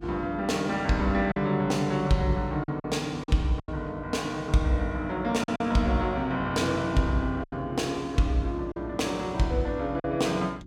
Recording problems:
electrical hum; 60 Hz, harmonics up to 360 Hz, SNR 20 dB
packet loss; 5% of the sound replaced, filled with silence

